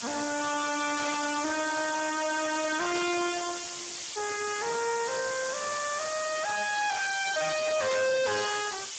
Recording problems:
lossy codec; Speex, log-spectral distance 20 dB, nothing above 7.8 kHz
distorted audio; hard clipping, signal-to-distortion ratio 5 dB
hiss; slope +1 dB per octave, SNR 7 dB
static burst; at 1 s, at 3 s and at 8 s; peak -3 dB vs average level

